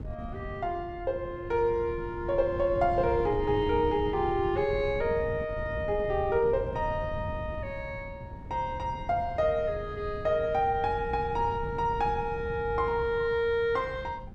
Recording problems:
wind noise; below 160 Hz, SNR 11 dB

